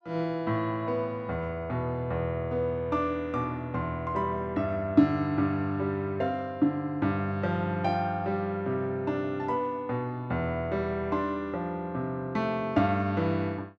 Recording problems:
none

